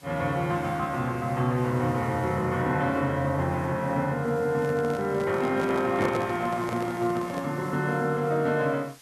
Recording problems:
background hiss; slope 0 dB per octave, SNR 25 dB
microphone handling noise; from 4.5 to 7.5 s; peak 0 dB vs average level

